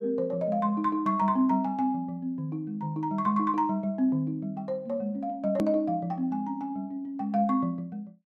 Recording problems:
hard cut with a click; at 5.5 s

